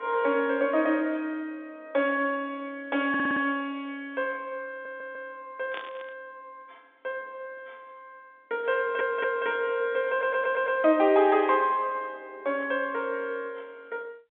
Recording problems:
telephone audio; 170 Hz to 3.7 kHz, G.711
audio stuttering; 4 times, first at 3 s
burst of static; at 6 s; peak -8 dB vs average level

